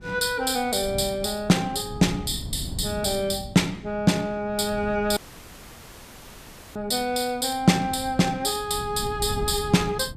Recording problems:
wind on the microphone; below 180 Hz, SNR 14 dB
audio cutting out; at 5 s for 1.5 s

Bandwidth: 14.5 kHz